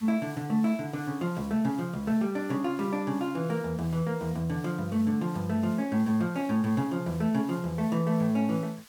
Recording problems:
background hiss; SNR 23 dB

